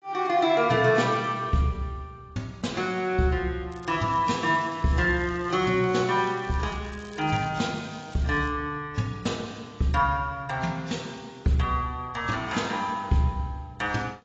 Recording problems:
codec artefacts; AAC, log-spectral distance 3 dB, nothing above 7.3 kHz
crackling; from 3.5 to 8.5 s; loose cable, SNR 25 dB

